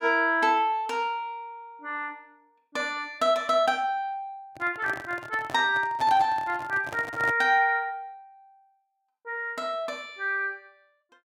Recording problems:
handling noise; from 4.5 to 7.5 s; peak -5 dB vs average level

